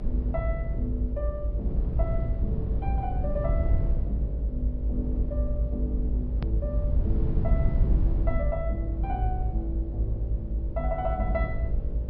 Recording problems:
treble missing; nothing above 5.5 kHz
hum; 50 Hz, harmonics up to 600 Hz, SNR 12 dB
rumble; below 72 Hz, SNR -7 dB
edit click; at 6.5 s

